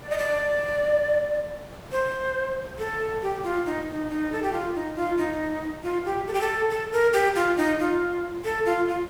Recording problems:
hiss; slope -6 dB per octave, SNR 17 dB

